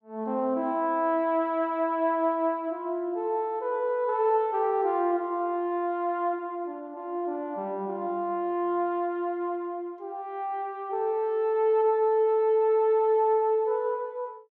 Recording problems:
none

